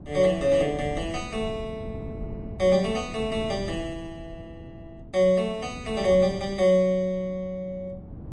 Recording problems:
lossy codec; MP3, then Vorbis, log-spectral distance 2 dB, nothing above 9.2 kHz
wind noise; below 240 Hz, SNR 15 dB

